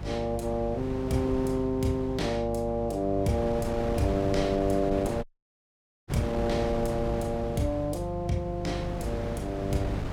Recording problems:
hum; 50 Hz, harmonics up to 400 Hz, SNR 9 dB
wind noise; below 510 Hz, SNR 8 dB
audio cutting out; at 5 s for 1 s

